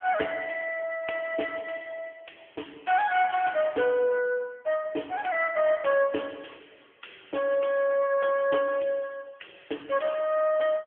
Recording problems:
phone line; 300 Hz to 3.3 kHz, AMR-NB

